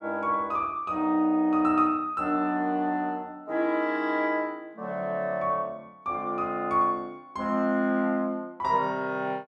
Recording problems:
none

